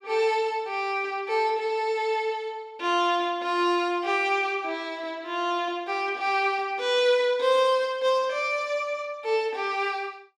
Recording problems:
none

